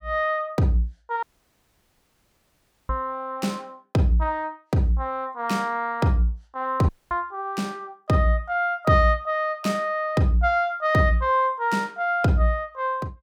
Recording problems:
audio cutting out; at 1 s for 1.5 s and at 7 s

